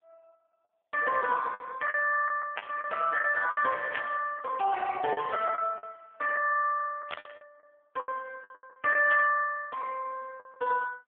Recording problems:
telephone audio; 340 Hz to 2.6 kHz, AMR-NB
packet loss; 10% of the sound replaced, filled with the last packet
burst of static; 4 times, first at 2.5 s; peak -1 dB vs average level

